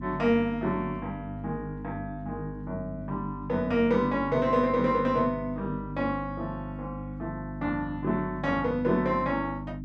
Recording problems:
hum; 50 Hz, harmonics up to 300 Hz, SNR 9 dB

